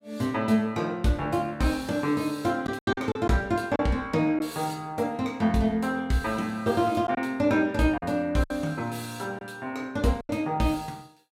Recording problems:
lost packets; 4% of the sound replaced, filled with silence

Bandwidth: 16 kHz